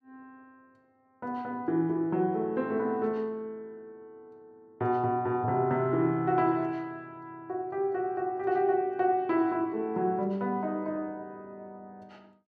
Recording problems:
none

